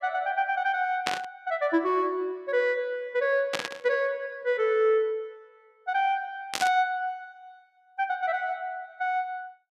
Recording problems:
burst of static; at 1 s, at 3.5 s and at 6.5 s; peak +4 dB vs average level

